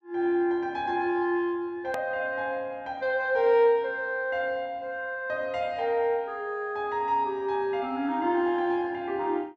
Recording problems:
click at an edit; at 2 s

